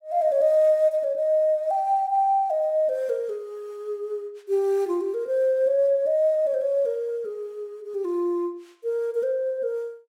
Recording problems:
none

